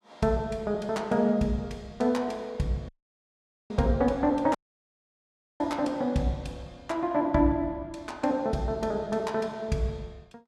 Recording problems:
dropout; at 3 s for 1 s and at 4.5 s for 1 s

